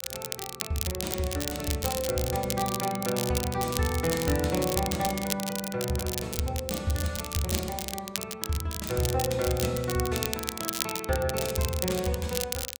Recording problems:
crackle; vinyl, SNR 4 dB

